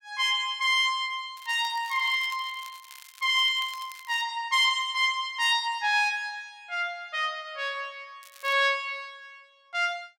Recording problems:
crackling; from 1.5 to 4 s and at 8 s; loose cable, SNR 22 dB

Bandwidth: 16.5 kHz